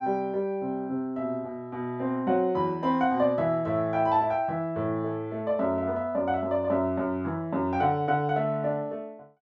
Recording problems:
none

